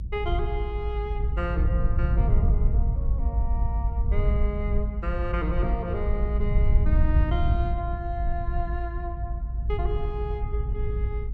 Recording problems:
rumble; below 74 Hz, SNR -7 dB

